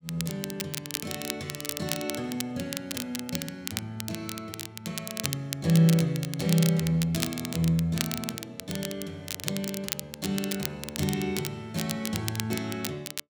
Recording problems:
crackling; vinyl, SNR 5 dB

